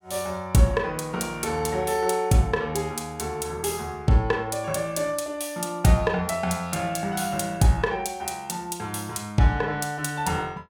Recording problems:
none

